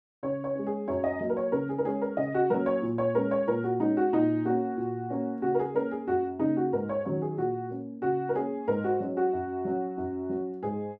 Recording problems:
none

